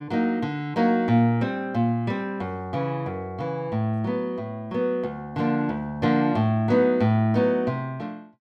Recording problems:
none

